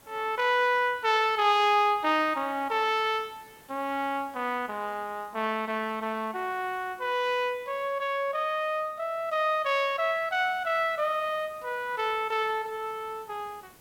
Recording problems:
hiss; slope -4 dB per octave, SNR 27 dB

